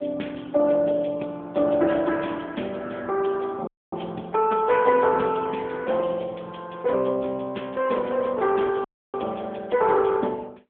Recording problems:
telephone audio; 240 Hz to 3 kHz, AMR-NB
dropout; at 3.5 s and at 9 s

